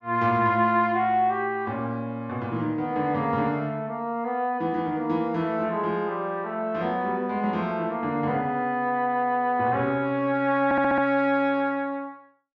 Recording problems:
audio stuttering; at 11 s

